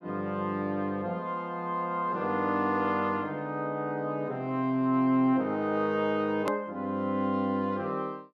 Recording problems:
hard cut with a click; at 6.5 s

